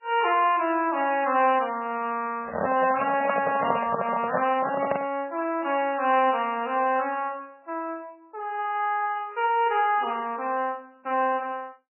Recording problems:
lossy compression; MP3, then MP3, log-spectral distance 4 dB, nothing above 2.6 kHz
handling noise; from 2.5 to 5 s; peak +3 dB vs average level

